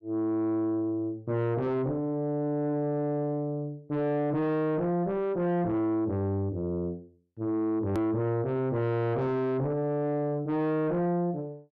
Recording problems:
distorted audio; soft clipping, signal-to-distortion ratio 7 dB
edit click; at 8 s

